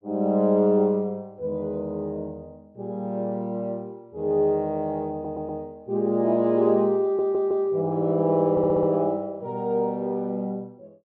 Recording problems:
audio stuttering; at 5 s, at 7 s and at 8.5 s

